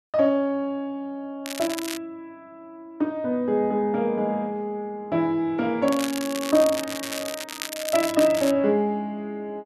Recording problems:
crackling; at 1.5 s and from 6 to 8.5 s; loose cable, SNR 8 dB

